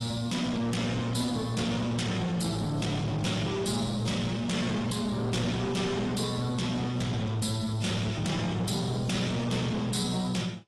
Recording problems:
lossy codec; AAC, log-spectral distance 4 dB, nothing above 11.3 kHz
distortion; soft clipping, signal-to-distortion ratio 8 dB

